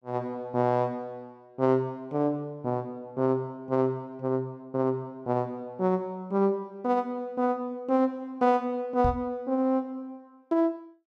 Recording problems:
microphone bump; at 9 s; peak +2 dB vs average level

